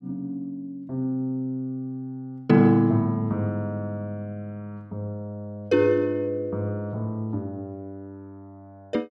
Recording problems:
none

